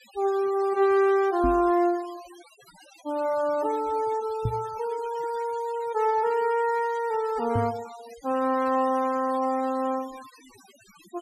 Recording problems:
noise reduction artefacts; signal-to-artefact ratio 21 dB
knock on the microphone; at 1.5 s, at 4.5 s and at 7.5 s; peak +1 dB vs average level

